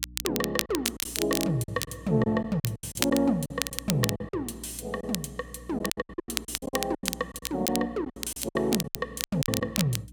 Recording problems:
electrical hum; 60 Hz, harmonics up to 300 Hz, SNR 19 dB
crackling; vinyl, SNR 3 dB
lost packets; 14% of the sound replaced, filled with silence

